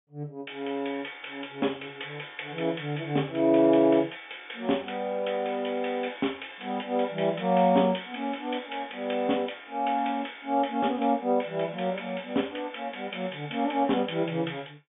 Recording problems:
treble missing; nothing above 3.5 kHz

